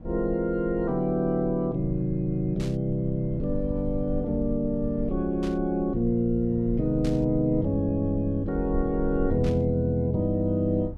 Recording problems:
rumble; below 64 Hz, SNR 13 dB
burst of static; 4 times, first at 2.5 s; peak -12 dB vs average level

